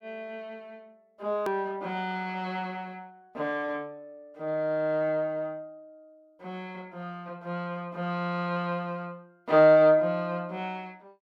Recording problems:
edit click; at 1.5 s

